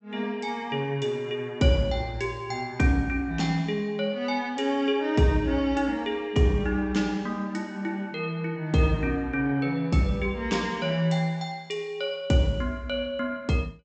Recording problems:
treble cut off; nothing above 8 kHz

